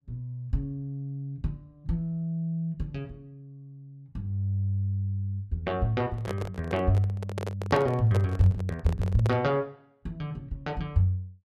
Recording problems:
microphone handling noise; from 6 to 9.5 s; peak 0 dB vs average level

